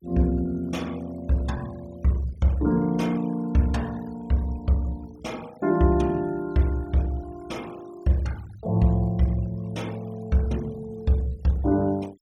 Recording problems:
denoising artefacts; signal-to-artefact ratio 24 dB

